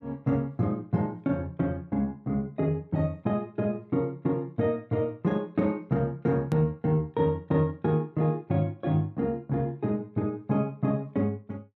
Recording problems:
edit click; at 6.5 s

